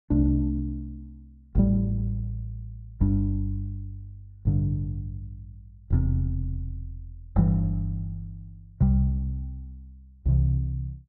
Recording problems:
none

